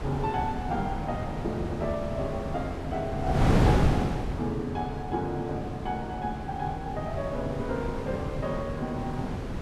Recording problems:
wind on the microphone; below 400 Hz, SNR -1 dB

